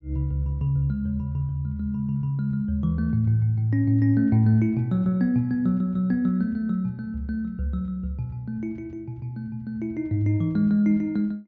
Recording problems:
treble missing; nothing above 8 kHz

